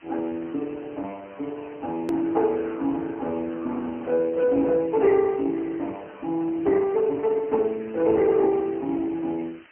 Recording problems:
phone line; 190 Hz to 3 kHz, AMR-NB, then MP3
hiss; SNR 27 dB
edit click; at 2 s

